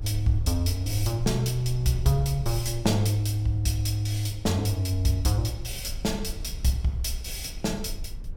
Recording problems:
low-frequency rumble; below 56 Hz, strongest tone 20 Hz, SNR 13 dB
wind on the microphone; below 330 Hz, SNR 24 dB

